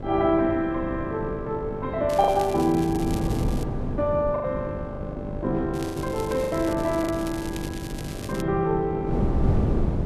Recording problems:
hum; 50 Hz, harmonics up to 1.6 kHz, SNR 12 dB
wind noise; below 230 Hz, SNR 6 dB
lost packets; 4% of the sound replaced, filled with the last packet
crackle; from 2 to 3.5 s and from 5.5 to 8.5 s; loose cable, SNR 16 dB

